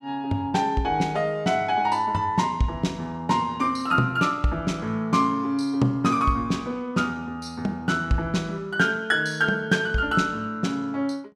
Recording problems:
none

